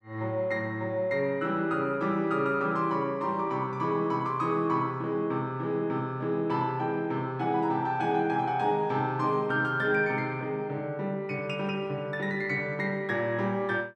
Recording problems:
none

